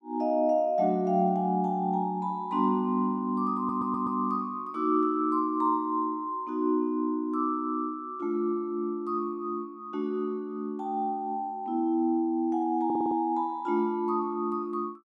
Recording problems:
audio stuttering; at 3.5 s and at 13 s

